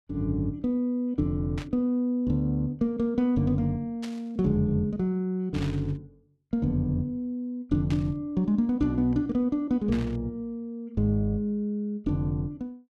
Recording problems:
static burst; 5 times, first at 1.5 s; peak -9 dB vs average level

